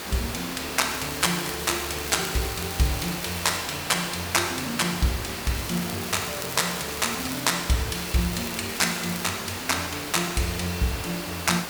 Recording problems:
hiss; slope -2 dB per octave, SNR 6 dB
crackling; 4 times, first at 1 s; loose cable, SNR 11 dB

